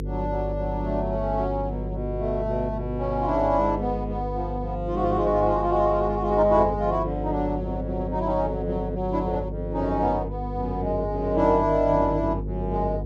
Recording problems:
electrical hum; 50 Hz, harmonics up to 500 Hz, SNR 7 dB

